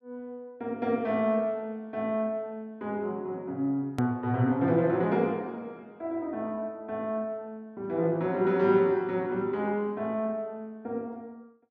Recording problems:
click at an edit; at 4 s

